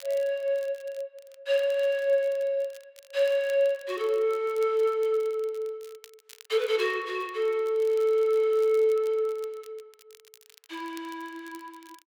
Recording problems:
crackling; vinyl, SNR 27 dB

